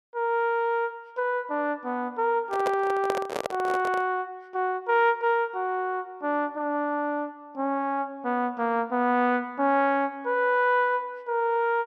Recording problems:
handling noise; from 2.5 to 4 s; peak +1 dB vs average level

